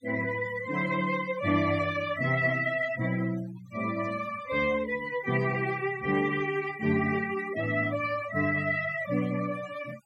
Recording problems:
denoising artefacts; signal-to-artefact ratio 15 dB

